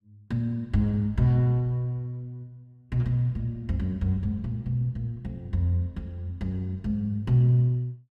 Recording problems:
none

